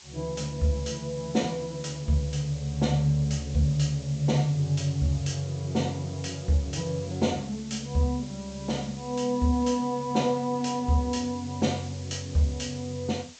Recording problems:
low-pass filter; nothing above 8 kHz
hiss; SNR 18 dB

